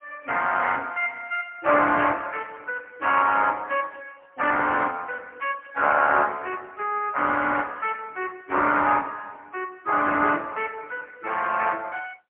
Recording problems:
phone line; 260 Hz to 3.3 kHz, AMR-NB, then MP3

